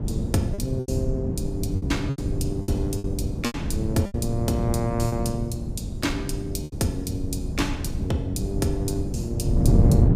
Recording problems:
wind noise; below 180 Hz, SNR -1 dB
packet loss; 7% of the sound replaced, filled with repeated pitch periods

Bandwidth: 15.5 kHz